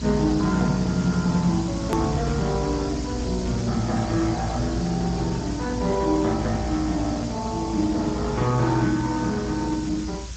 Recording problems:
lossy compression; Speex, log-spectral distance 6 dB, nothing above 13.1 kHz
hiss; slope +2 dB per octave, SNR 15 dB
low-frequency rumble; below 98 Hz, strongest tone 58 Hz, SNR 11 dB
hard cut with a click; at 2 s

